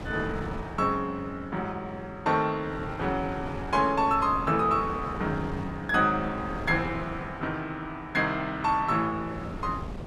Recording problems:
wind noise; below 420 Hz, SNR 12 dB

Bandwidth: 14 kHz